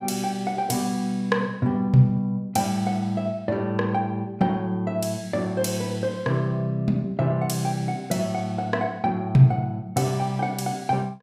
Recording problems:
none

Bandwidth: 15.5 kHz